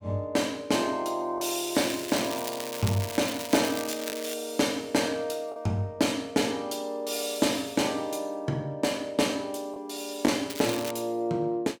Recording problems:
lost packets; 1% of the sound replaced, filled with the last packet
crackle; from 2 to 4.5 s and at 11 s; loose cable, SNR 8 dB

